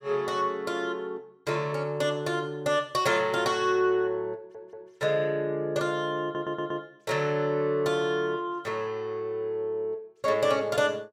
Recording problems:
audio stuttering; at 4.5 s and at 6 s

